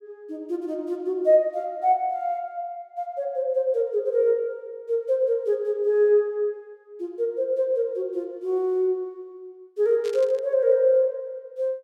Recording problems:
static burst; at 10 s; peak -13 dB vs average level

